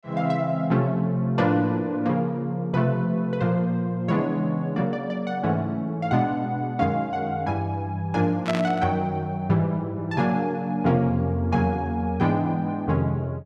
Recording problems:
static burst; at 8.5 s; peak -2 dB vs average level

